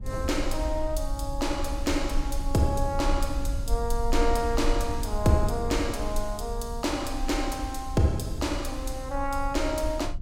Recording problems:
low-frequency rumble; below 52 Hz, strongest tone 20 Hz, SNR 5 dB

